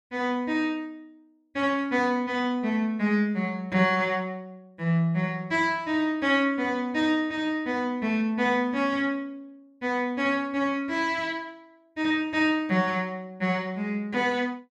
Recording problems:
none

